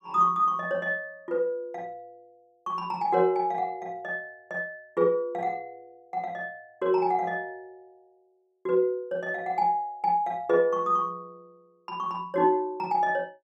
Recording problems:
none

